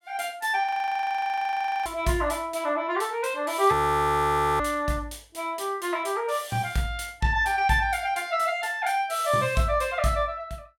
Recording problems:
audio freezing; at 0.5 s for 1 s and at 3.5 s for 1 s

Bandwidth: 17 kHz